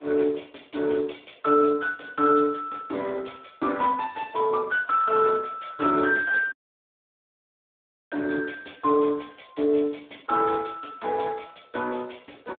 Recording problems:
telephone audio; 260 Hz to 3.6 kHz, Speex
audio cutting out; at 6.5 s for 1.5 s

